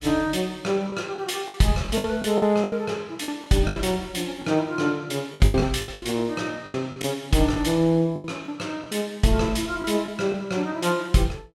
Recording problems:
lost packets; 10% of the sound replaced, filled with the last packet

